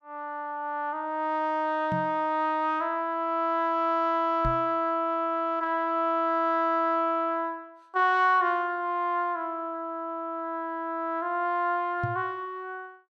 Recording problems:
knock on the microphone; at 2 s, at 4.5 s and at 12 s; peak -1 dB vs average level

